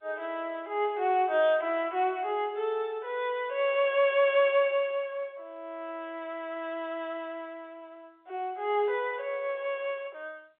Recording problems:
phone line; 320 Hz to 3.8 kHz, G.711

